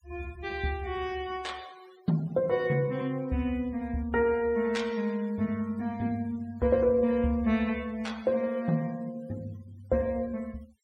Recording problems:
noise reduction artefacts; signal-to-artefact ratio 24 dB

